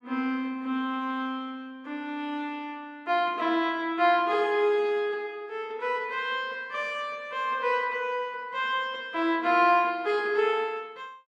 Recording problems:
none

